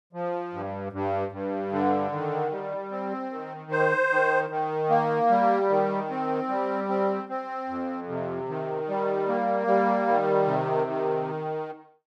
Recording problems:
none

